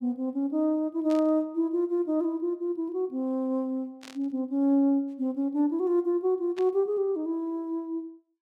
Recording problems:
burst of static; at 1 s, at 4 s and at 6.5 s; peak -12 dB vs average level

